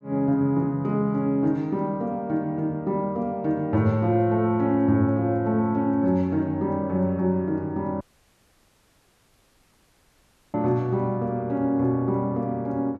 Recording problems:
audio cutting out; at 8 s for 2.5 s

